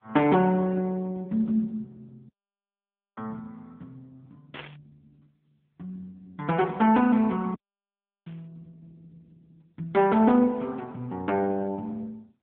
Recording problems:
phone line; 130 Hz to 3.5 kHz, AMR-NB
audio cutting out; at 2.5 s for 1 s and at 7.5 s for 0.5 s
static burst; at 4.5 s and at 8.5 s; peak -11 dB vs average level

